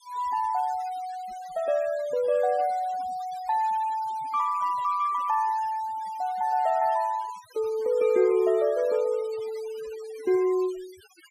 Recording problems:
denoising artefacts; signal-to-artefact ratio 21 dB

